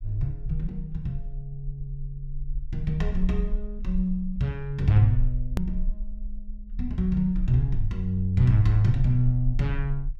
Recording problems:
low-frequency rumble; below 40 Hz, strongest tone 24 Hz, SNR 9 dB
hard cut with a click; at 5.5 s

